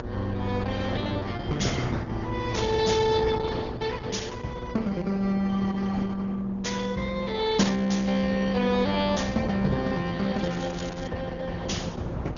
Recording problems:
low-pass filter; nothing above 6.9 kHz
lossy compression; Opus, log-spectral distance 4 dB
hum; 60 Hz, harmonics up to 1.3 kHz, SNR 13 dB
low-frequency rumble; below 240 Hz, SNR 9 dB
crackle; at 10 s; loose cable, SNR 17 dB

